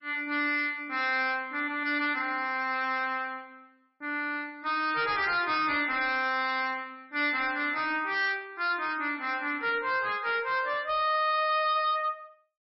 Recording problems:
codec artefacts; MP3, log-spectral distance 3 dB, nothing above 5.3 kHz
distorted audio; hard clipping, signal-to-distortion ratio 10 dB

